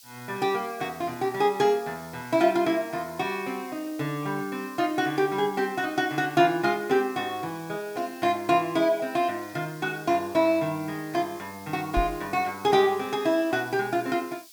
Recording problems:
background hiss; SNR 21 dB
knock on the microphone; at 12 s; peak 0 dB vs average level

